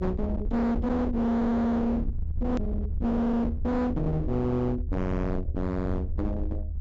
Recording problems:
treble missing; nothing above 8 kHz
distorted audio; hard clipping, signal-to-distortion ratio 7 dB
rumble; below 130 Hz, SNR 5 dB
hard cut with a click; at 2.5 s

